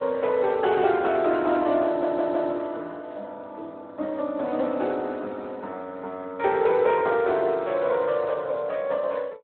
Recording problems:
telephone audio; 220 Hz to 3.8 kHz, Speex
stutter; at 2 s

